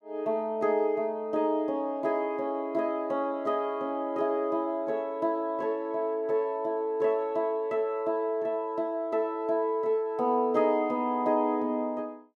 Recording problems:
none

